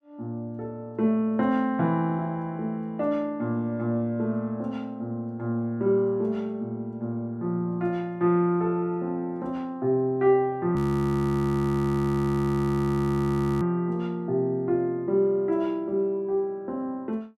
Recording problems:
frozen audio; at 11 s for 3 s

